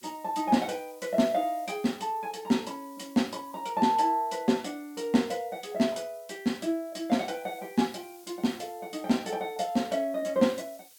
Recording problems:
background hiss; slope +2 dB per octave, SNR 24 dB

